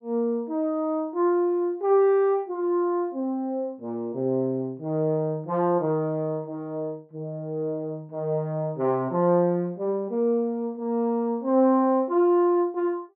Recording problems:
none

